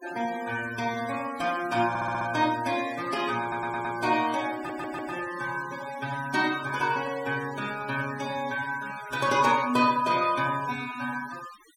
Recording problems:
denoising artefacts; signal-to-artefact ratio 16 dB
stutter; at 2 s, at 3.5 s and at 4.5 s

